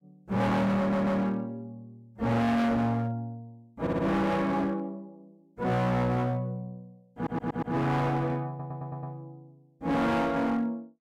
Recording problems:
distorted audio; hard clipping, signal-to-distortion ratio 6 dB
audio stuttering; 4 times, first at 1 s

